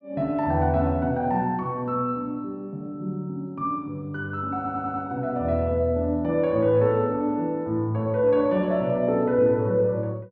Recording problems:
stutter; at 4.5 s

